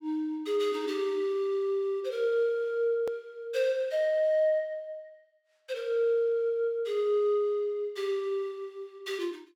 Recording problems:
click at an edit; at 3 s

